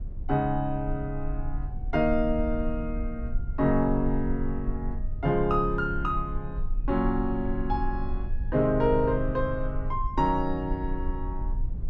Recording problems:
rumble; below 52 Hz, strongest tone 20 Hz, SNR 7 dB

